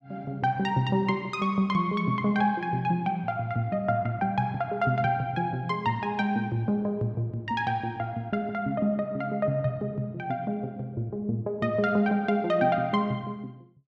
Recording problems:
none

